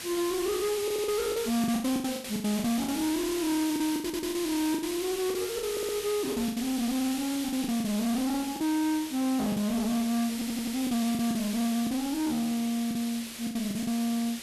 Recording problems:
distorted audio; soft clipping, signal-to-distortion ratio 7 dB
hiss; slope 0 dB per octave, SNR 8 dB
packet loss; 11% of the sound replaced, filled with the last packet
audio stuttering; 4 times, first at 1 s

